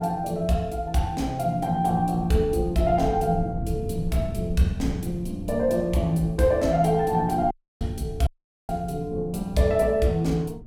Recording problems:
wind on the microphone; below 160 Hz, SNR 12 dB
dropout; at 7.5 s and at 8.5 s

